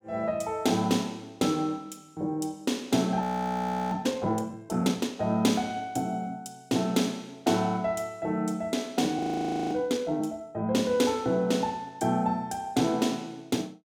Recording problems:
audio freezing; at 3 s for 0.5 s and at 9 s for 0.5 s

